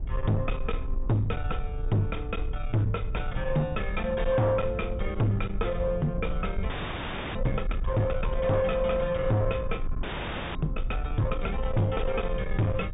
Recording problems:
treble missing; nothing above 3.7 kHz
distorted audio; soft clipping, signal-to-distortion ratio 8 dB
rumble; below 62 Hz, SNR 6 dB
audio freezing; at 6.5 s for 0.5 s and at 10 s for 0.5 s

